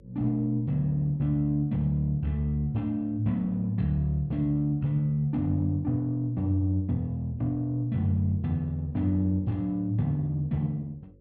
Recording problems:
hum; 50 Hz, harmonics up to 550 Hz, SNR 30 dB

